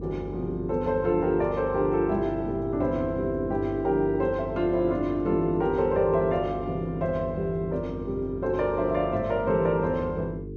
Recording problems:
hum; 50 Hz, harmonics up to 450 Hz, SNR 10 dB

